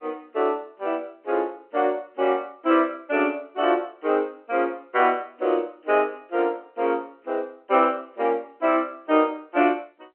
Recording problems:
phone line; 260 Hz to 3.1 kHz, G.711

